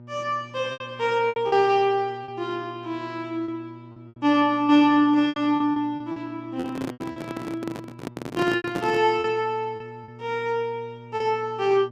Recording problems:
electrical hum; 60 Hz, harmonics up to 840 Hz, SNR 20 dB
lost packets; 9% of the sound replaced, filled with repeated pitch periods
handling noise; from 6.5 to 9 s; peak -2 dB vs average level

